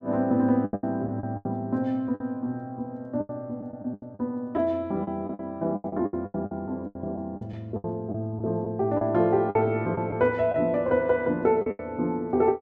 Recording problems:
packet loss; 12% of the sound replaced, filled with the last packet

